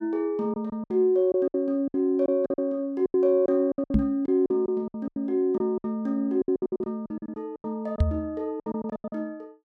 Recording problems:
packet loss; 16% of the sound replaced, filled with silence
knock on the microphone; at 4 s and at 8 s; peak +8 dB vs average level

